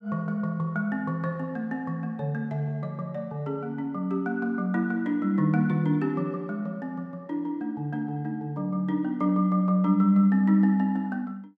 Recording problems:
none

